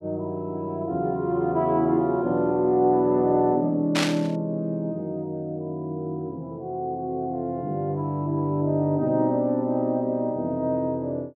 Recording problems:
static burst; at 4 s; peak +3 dB vs average level

